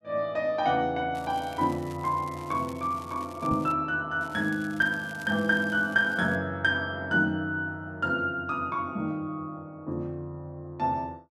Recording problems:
crackle; from 1 to 3.5 s and from 4 to 6.5 s; loose cable, SNR 23 dB
microphone thump; at 3.5 s; peak -1 dB vs average level

